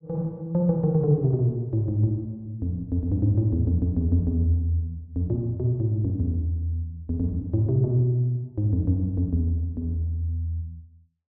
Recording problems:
low-pass filter; nothing above 5.5 kHz

